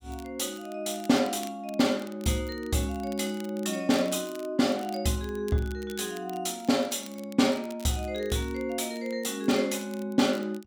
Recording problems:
crackling; vinyl, SNR 21 dB

